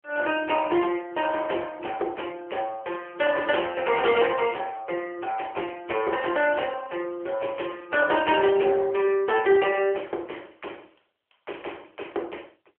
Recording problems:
phone line; 300 Hz to 3.3 kHz, AMR-NB

